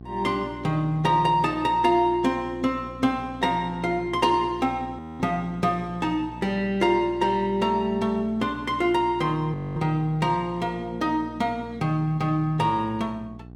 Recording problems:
electrical hum; 60 Hz, harmonics up to 780 Hz, SNR 17 dB
audio freezing; at 5 s and at 9.5 s

